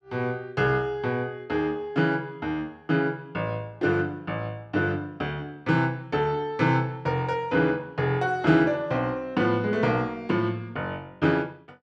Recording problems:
none

